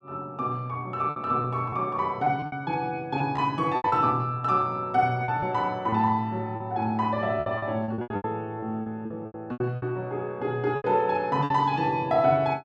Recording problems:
packet loss; 10% of the sound replaced, filled with repeated pitch periods

